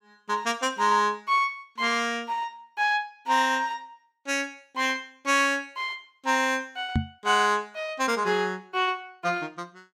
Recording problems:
microphone bump; at 7 s; peak +4 dB vs average level

